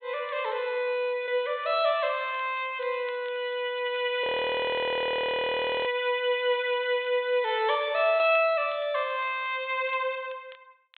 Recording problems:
low-pass filter; nothing above 4 kHz
crackle; vinyl, SNR 29 dB
frozen audio; at 4 s for 1.5 s

